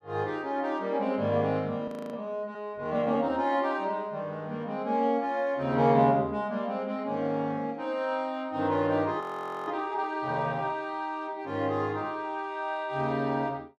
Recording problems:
audio freezing; at 2 s and at 9 s

